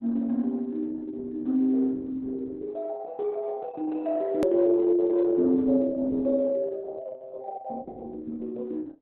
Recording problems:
lossy compression; Opus, log-spectral distance 2 dB, nothing above 13.1 kHz
hard cut with a click; at 4.5 s

